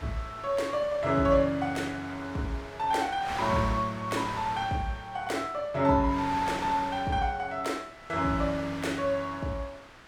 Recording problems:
wind noise; below 2.6 kHz, SNR 13 dB

